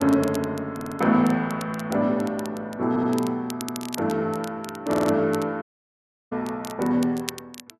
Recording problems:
crackling; vinyl, SNR 16 dB
audio stuttering; 4 times, first at 1 s
audio cutting out; at 5.5 s for 0.5 s

